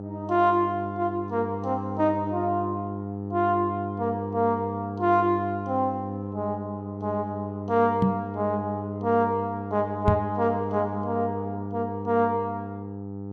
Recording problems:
hum; 50 Hz, harmonics up to 900 Hz, SNR 7 dB
microphone bump; at 8 s and at 10 s; peak +9 dB vs average level

